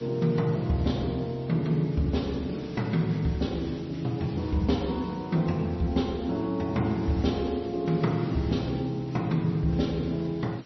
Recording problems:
codec artefacts; MP3, log-spectral distance 3 dB, nothing above 5.8 kHz
hiss; slope -2 dB per octave, SNR 22 dB

